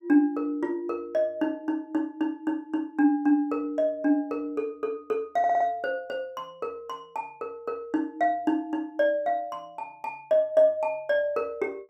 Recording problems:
stutter; at 5.5 s

